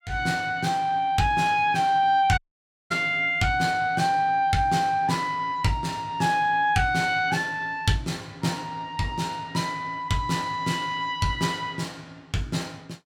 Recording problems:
dropout; at 2.5 s for 0.5 s

